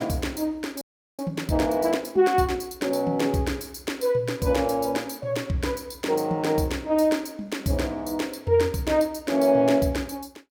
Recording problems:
frozen audio; at 1 s

